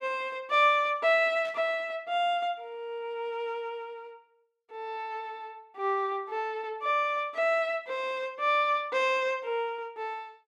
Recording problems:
burst of static; at 1.5 s; peak -17 dB vs average level

